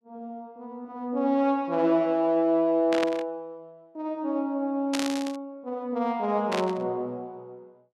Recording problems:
burst of static; at 3 s, at 5 s and at 6.5 s; peak 0 dB vs average level

